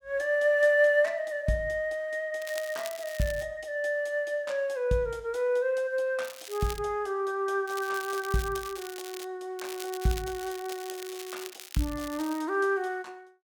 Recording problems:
crackling; 4 times, first at 2.5 s; loose cable, SNR 14 dB

